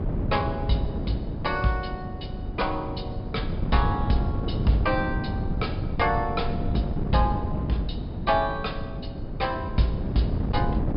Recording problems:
low-pass filter; nothing above 5.5 kHz
wind noise; below 220 Hz, SNR 2 dB

